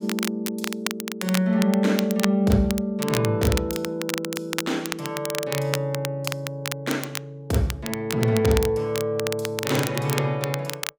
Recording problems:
crackling; vinyl, SNR 7 dB

